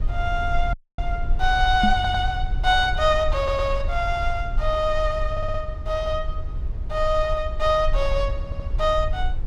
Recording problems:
rumble; below 58 Hz, SNR 6 dB
dropout; at 0.5 s
microphone thump; at 2 s; peak +4 dB vs average level
audio stuttering; 4 times, first at 2 s

